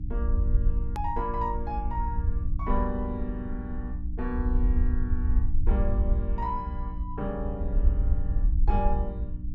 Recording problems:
hum; 60 Hz, harmonics up to 300 Hz, SNR 5 dB
rumble; below 62 Hz, SNR -4 dB
hard cut with a click; at 1 s

